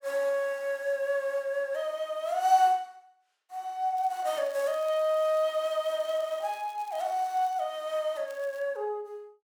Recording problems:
crackling; from 4 to 7.5 s and at 8.5 s; loose cable, SNR 26 dB

